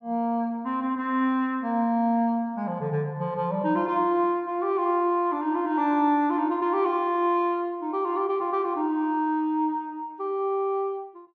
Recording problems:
treble cut off; nothing above 6.2 kHz

